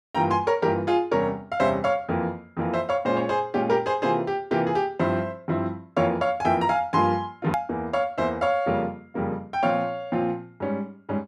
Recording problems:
click at an edit; at 7.5 s

